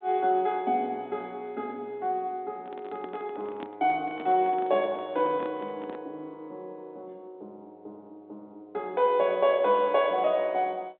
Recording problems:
telephone audio; 260 Hz to 4 kHz, G.726
handling noise; from 2.5 to 6 s; peak -9 dB vs average level

